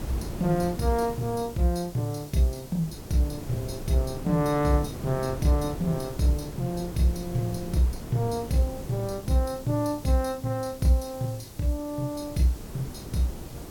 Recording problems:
hiss; SNR 20 dB
wind noise; below 360 Hz, SNR 12 dB

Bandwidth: 17 kHz